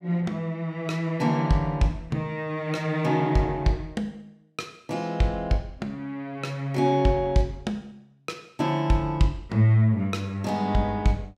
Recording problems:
none

